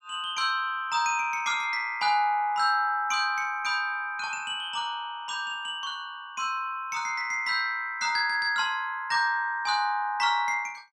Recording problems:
none

